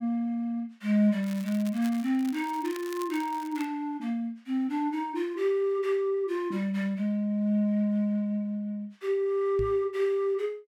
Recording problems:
crackling; at 1 s and from 2 to 3.5 s; loose cable, SNR 19 dB
microphone bump; at 9.5 s; peak -4 dB vs average level

